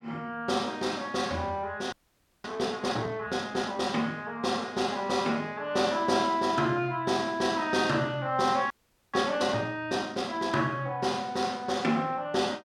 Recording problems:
frozen audio; at 2 s for 0.5 s and at 8.5 s

